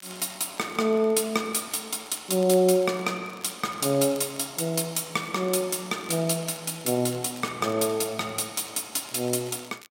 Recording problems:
crackling; vinyl, SNR 24 dB

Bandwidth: 16 kHz